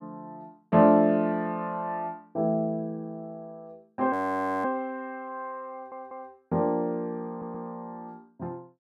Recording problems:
frozen audio; at 4 s for 0.5 s
stutter; at 5.5 s and at 7.5 s

